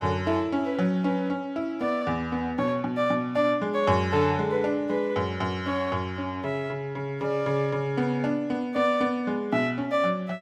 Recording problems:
none

